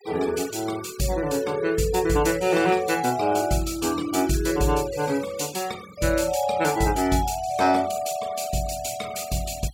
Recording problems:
denoising artefacts; signal-to-artefact ratio 18 dB

